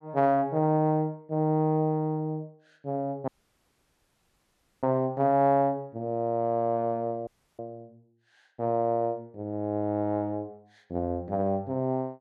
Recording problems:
audio cutting out; at 3.5 s for 1.5 s and at 7.5 s

